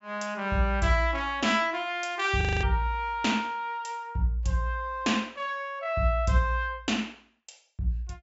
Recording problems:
low-pass filter; nothing above 8 kHz
audio freezing; at 2.5 s

